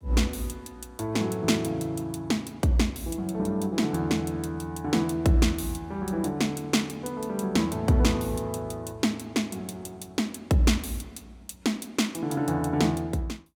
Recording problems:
none

